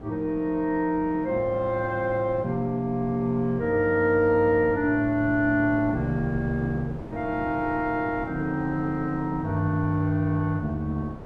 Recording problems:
wind noise; below 460 Hz, SNR 15 dB

